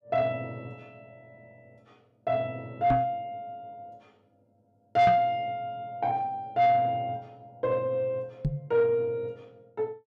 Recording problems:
distortion; soft clipping, signal-to-distortion ratio 11 dB
microphone thump; at 3 s, at 5 s and at 8.5 s; peak +4 dB vs average level

